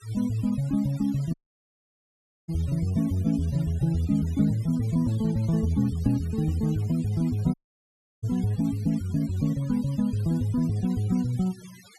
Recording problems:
denoising artefacts; signal-to-artefact ratio 22 dB
audio cutting out; at 1.5 s for 1 s and at 7.5 s for 0.5 s

